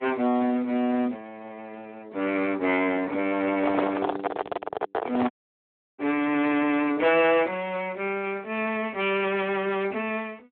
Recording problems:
phone line; 260 Hz to 3.5 kHz, Speex
distorted audio; hard clipping, signal-to-distortion ratio 11 dB
handling noise; from 3.5 to 6 s; peak +5 dB vs average level
dropout; at 5.5 s for 0.5 s

